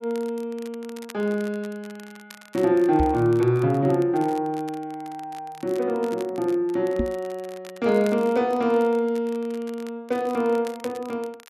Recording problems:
crackle; vinyl, SNR 23 dB
microphone bump; at 3 s and at 7 s; peak +2 dB vs average level

